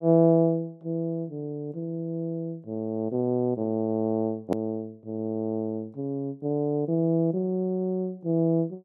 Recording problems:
hard cut with a click; at 4.5 s

